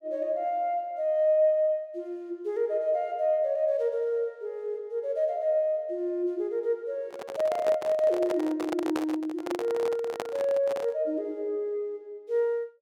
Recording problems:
handling noise; from 7 to 11 s; peak 0 dB vs average level

